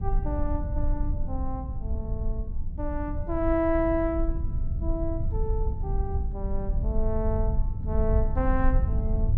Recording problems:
low-frequency rumble; below 68 Hz, SNR -1 dB

